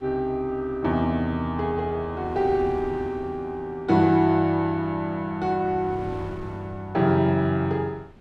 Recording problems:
wind on the microphone; below 370 Hz, SNR 20 dB

